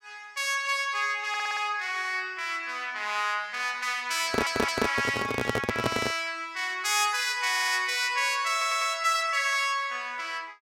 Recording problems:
stutter; 4 times, first at 1.5 s
microphone handling noise; from 4.5 to 6 s; peak +4 dB vs average level

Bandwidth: 16.5 kHz